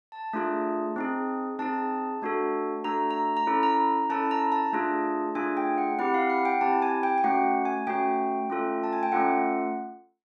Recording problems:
none

